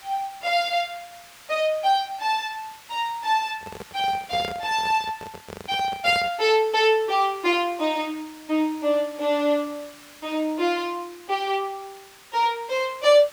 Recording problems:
hiss; SNR 22 dB
microphone handling noise; from 3.5 to 6.5 s; peak -6 dB vs average level

